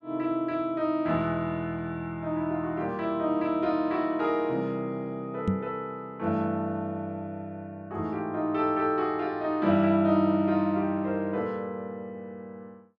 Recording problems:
microphone thump; at 5.5 s; peak +6 dB vs average level

